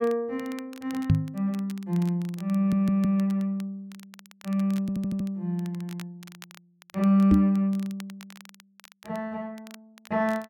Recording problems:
crackle; vinyl, SNR 24 dB
microphone thump; at 1 s and at 7.5 s; peak +9 dB vs average level
audio stuttering; at 2.5 s and at 5 s

